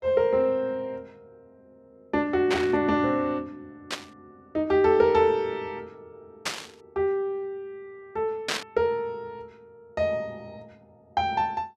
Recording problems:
burst of static; 4 times, first at 2.5 s; peak +2 dB vs average level

